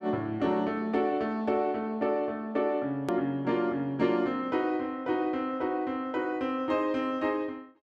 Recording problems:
click at an edit; at 3 s

